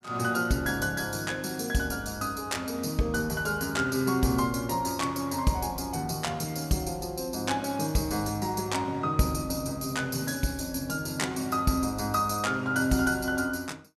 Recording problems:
none

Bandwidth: 14.5 kHz